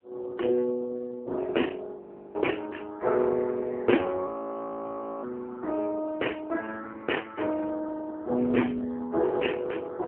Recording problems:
telephone audio; 260 Hz to 3.1 kHz, AMR-NB
audio freezing; at 2 s and at 4.5 s for 1 s

